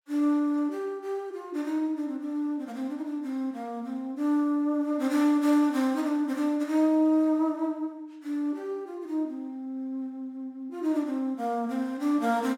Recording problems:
none

